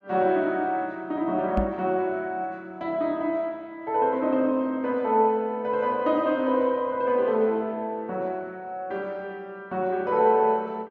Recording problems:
knock on the microphone; at 1.5 s; peak +3 dB vs average level

